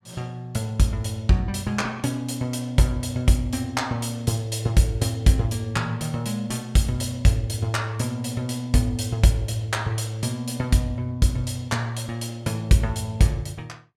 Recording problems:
none

